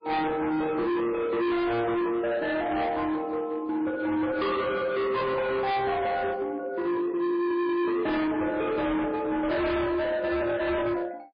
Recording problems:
codec artefacts; MP3, log-spectral distance 2 dB, nothing above 4.5 kHz
distortion; hard clipping, signal-to-distortion ratio 6 dB

